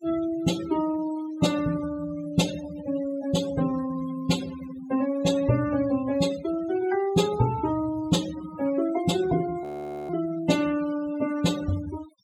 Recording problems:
noise reduction artefacts; signal-to-artefact ratio 12 dB
frozen audio; at 9.5 s

